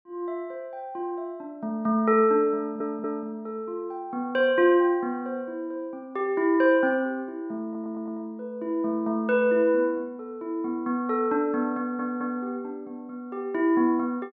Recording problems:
audio stuttering; at 2.5 s, at 7.5 s and at 12 s

